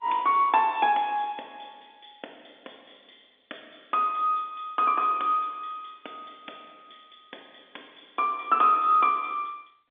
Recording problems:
telephone audio; 240 Hz to 3.6 kHz, G.711

